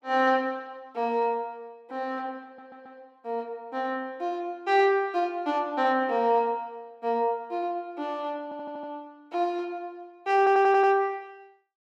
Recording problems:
audio stuttering; at 2.5 s, at 8.5 s and at 10 s

